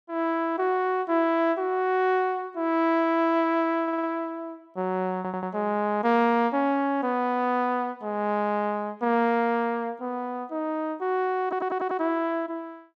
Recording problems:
stutter; at 4 s, at 5 s and at 11 s

